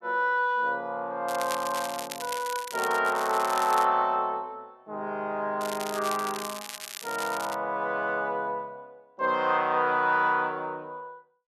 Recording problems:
crackle; from 1.5 to 4 s and from 5.5 to 7.5 s; loose cable, SNR 11 dB

